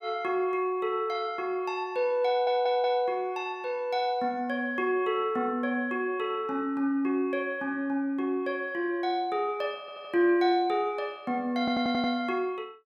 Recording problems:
stutter; at 2.5 s, at 10 s and at 12 s

